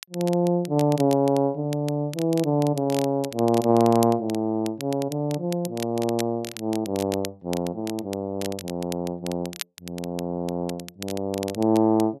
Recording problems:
crackle; vinyl, SNR 15 dB

